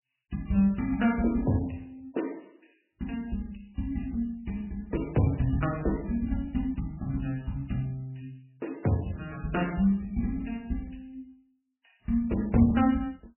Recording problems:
lossy compression; MP3, log-spectral distance 5 dB, nothing above 2.9 kHz

